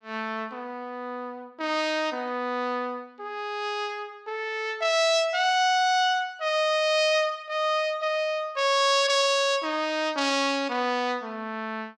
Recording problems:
none

